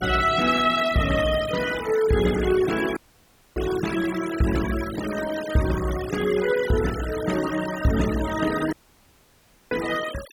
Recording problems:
noise reduction artefacts; signal-to-artefact ratio 12 dB
dropout; at 3 s for 0.5 s and at 8.5 s for 1 s

